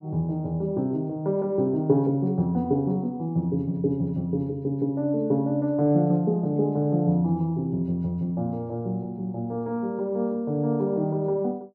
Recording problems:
none

